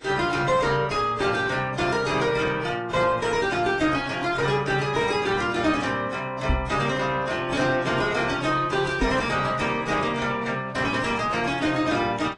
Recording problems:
lossy codec; AAC, then AAC, log-spectral distance 4 dB
distorted audio; soft clipping, signal-to-distortion ratio 10 dB
microphone thump; at 6.5 s and at 9 s; peak +3 dB vs average level

